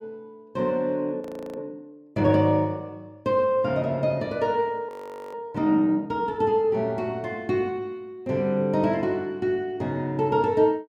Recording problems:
frozen audio; at 1 s and at 5 s

